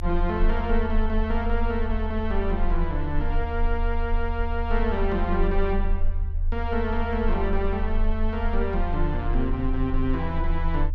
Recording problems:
rumble; below 44 Hz, strongest tone 26 Hz, SNR 1 dB

